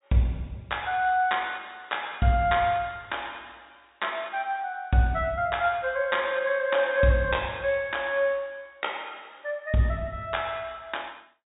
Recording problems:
treble cut off; nothing above 4 kHz

